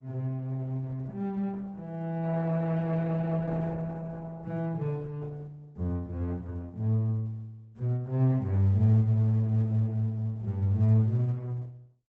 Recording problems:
lossy codec; Opus, log-spectral distance 2 dB

